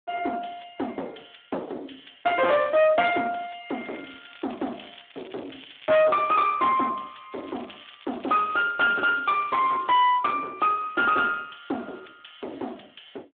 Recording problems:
telephone audio; 260 Hz to 3.6 kHz, Speex
distorted audio; hard clipping, uneven, signal-to-distortion ratio 7 dB
crackle; from 3.5 to 6 s and from 7.5 to 10 s; loose cable, SNR 24 dB

